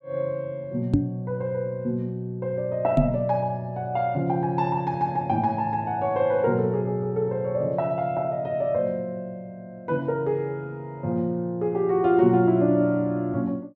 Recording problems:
knock on the microphone; at 1 s and at 3 s; peak +7 dB vs average level

